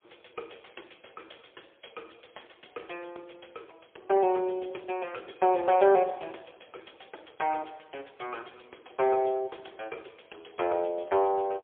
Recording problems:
telephone audio; 300 Hz to 3.6 kHz, AMR-NB, then MP3

